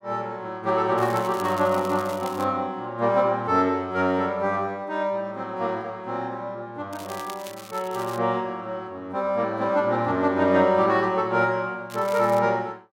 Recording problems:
crackling; from 1 to 2.5 s, from 7 to 8 s and at 12 s; loose cable, SNR 19 dB

